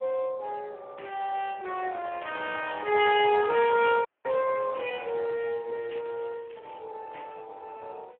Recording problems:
phone line; 320 Hz to 3.1 kHz, Speex
crackling; from 4 to 7 s; loose cable, SNR 27 dB
audio freezing; at 4 s

